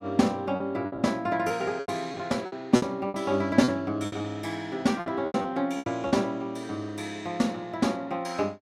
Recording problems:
packet loss; 10% of the sound replaced, filled with repeated pitch periods

